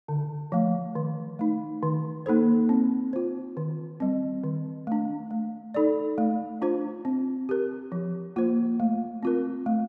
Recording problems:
none

